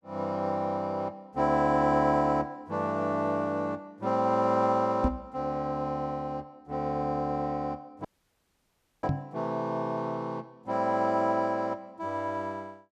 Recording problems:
microphone thump; at 5 s and at 9 s; peak +5 dB vs average level
audio cutting out; at 8 s for 1 s

